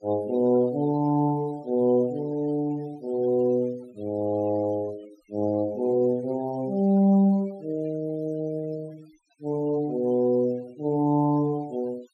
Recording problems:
noise reduction artefacts; signal-to-artefact ratio 26 dB

